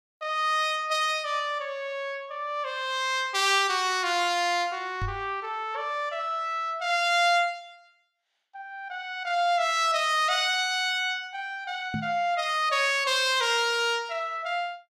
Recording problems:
knock on the microphone; at 5 s and at 12 s; peak -2 dB vs average level

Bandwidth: 15 kHz